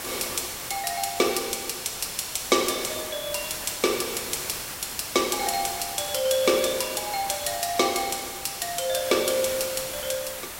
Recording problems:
background hiss; slope -1 dB per octave, SNR 7 dB

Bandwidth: 16 kHz